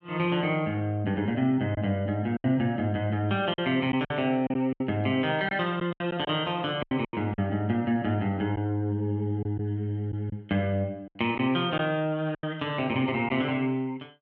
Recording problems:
lost packets; 6% of the sound replaced, filled with silence

